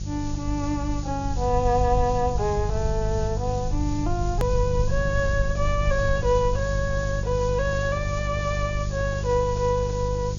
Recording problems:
low-pass filter; nothing above 7 kHz
hum; 50 Hz, harmonics up to 400 Hz, SNR 4 dB
background hiss; slope +6 dB per octave, SNR 17 dB
low-frequency rumble; below 80 Hz, SNR 6 dB
edit click; at 4.5 s

